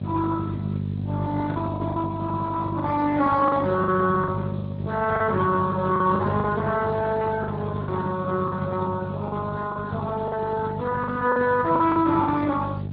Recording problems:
low-pass filter; nothing above 5.5 kHz
lossy codec; Speex, log-spectral distance 3 dB
hum; 50 Hz, harmonics up to 450 Hz, SNR 5 dB
lost packets; 8% of the sound replaced, filled with the last packet

